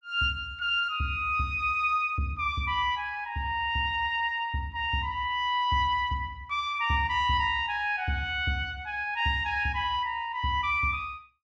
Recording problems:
none

